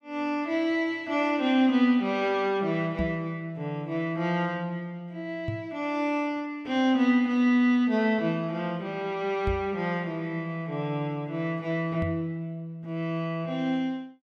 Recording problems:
knock on the microphone; 4 times, first at 3 s; peak +1 dB vs average level

